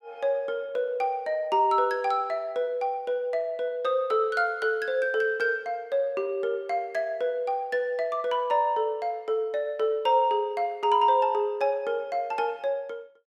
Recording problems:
none

